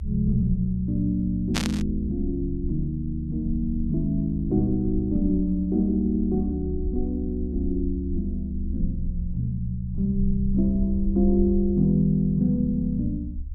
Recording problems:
rumble; below 72 Hz, SNR 7 dB
static burst; at 1.5 s; peak +3 dB vs average level

